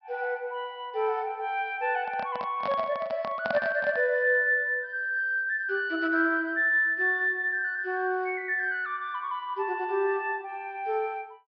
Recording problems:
treble cut off; nothing above 5.5 kHz
microphone handling noise; from 2 to 4 s; peak 0 dB vs average level

